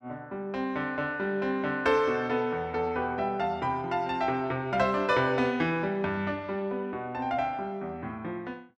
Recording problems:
none

